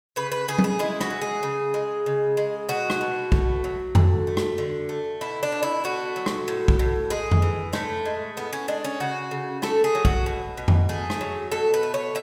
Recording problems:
none

